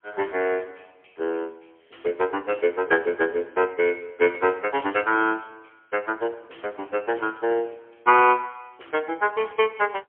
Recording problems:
phone line; 280 Hz to 3.2 kHz, AMR-NB, then MP3

